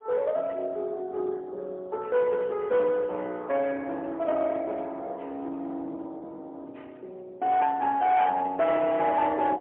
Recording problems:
phone line; 320 Hz to 3.3 kHz, AMR-NB, then MP3
distorted audio; hard clipping, uneven, signal-to-distortion ratio 12 dB

